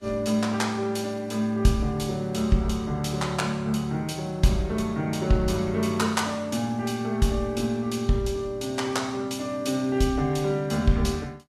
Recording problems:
codec artefacts; Vorbis, log-spectral distance 2 dB, nothing above 13.1 kHz

